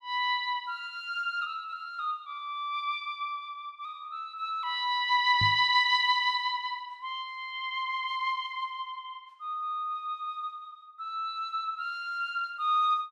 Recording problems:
knock on the microphone; at 5.5 s; peak 0 dB vs average level

